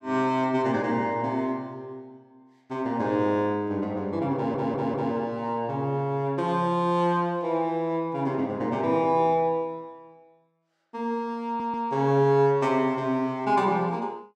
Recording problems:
stutter; at 4.5 s and at 11 s

